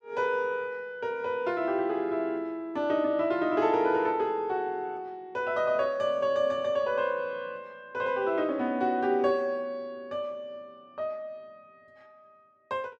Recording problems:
none

